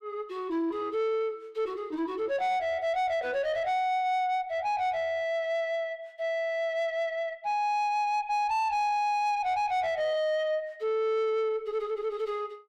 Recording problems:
distorted audio; soft clipping, signal-to-distortion ratio 10 dB

